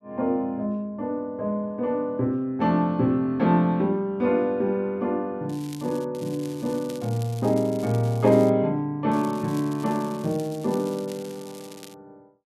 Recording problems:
crackle; at 5.5 s, from 6 to 8.5 s and from 9 to 12 s; loose cable, SNR 21 dB

